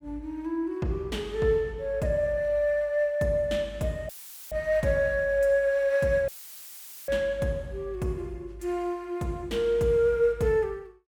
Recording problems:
audio cutting out; at 4 s and at 6.5 s for 1 s; filled with static

